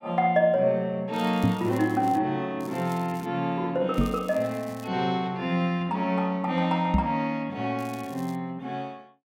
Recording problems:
crackling; 4 times, first at 1 s; loose cable, SNR 23 dB
knock on the microphone; at 1.5 s, at 4 s and at 7 s; peak +6 dB vs average level

